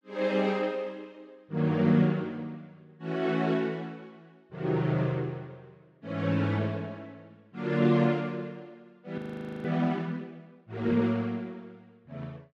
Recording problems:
frozen audio; at 9 s

